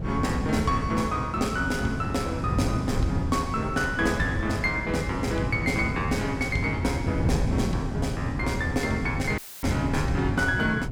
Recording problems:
wind noise; below 190 Hz, SNR 3 dB
dropout; at 9.5 s; filled with static

